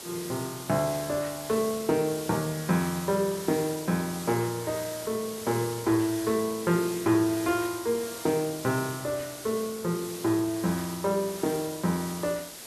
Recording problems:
hiss; slope -2 dB per octave, SNR 10 dB

